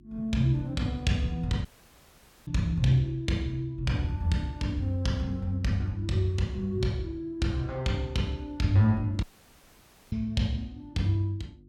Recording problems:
electrical hum; 50 Hz, harmonics up to 350 Hz, SNR 26 dB
dropout; at 1.5 s for 1 s and at 9 s for 1 s

